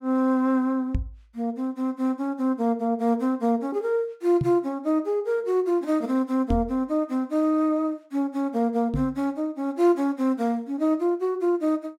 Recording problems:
knock on the microphone; 4 times, first at 1 s; peak +2 dB vs average level

